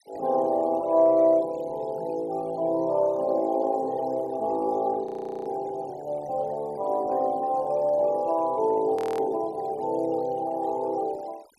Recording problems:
denoising artefacts; signal-to-artefact ratio 26 dB
frozen audio; at 5 s and at 9 s

